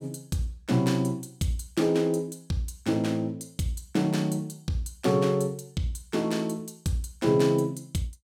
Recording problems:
none

